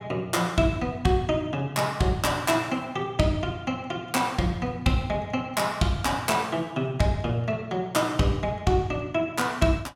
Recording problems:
none

